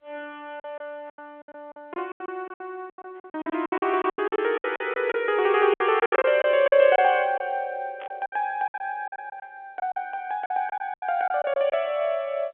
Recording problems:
phone line; 220 Hz to 3.5 kHz, G.711
lost packets; 16% of the sound replaced, filled with silence
static burst; at 8 s; peak -14 dB vs average level

